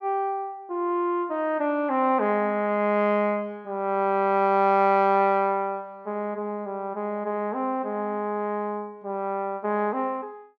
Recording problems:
none

